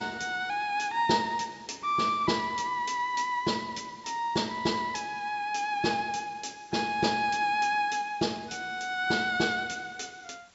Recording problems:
treble cut off; nothing above 8 kHz
background hiss; slope -1 dB per octave, SNR 29 dB

